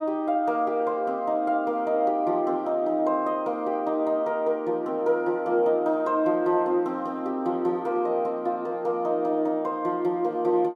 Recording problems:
none

